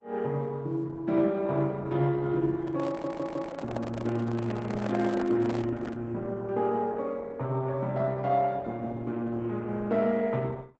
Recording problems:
codec artefacts; Opus, log-spectral distance 2 dB
handling noise; from 2.5 to 6 s; peak -4 dB vs average level
stutter; at 3 s

